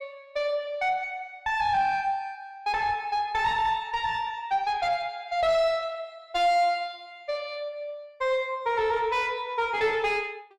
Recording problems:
distortion; soft clipping, signal-to-distortion ratio 10 dB

